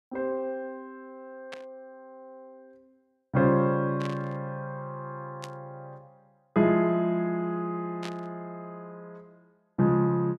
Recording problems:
burst of static; 4 times, first at 1.5 s; peak -7 dB vs average level

